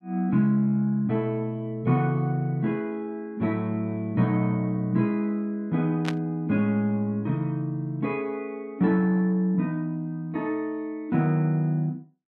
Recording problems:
burst of static; at 6 s; peak -2 dB vs average level

